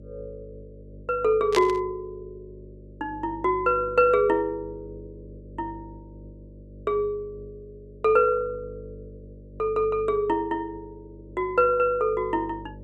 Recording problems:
electrical hum; 50 Hz, harmonics up to 600 Hz, SNR 20 dB
burst of static; at 1.5 s; peak +1 dB vs average level

